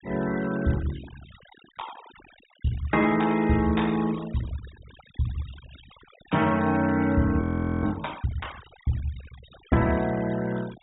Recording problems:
treble cut off; nothing above 4 kHz
denoising artefacts; signal-to-artefact ratio 19 dB
frozen audio; at 7.5 s

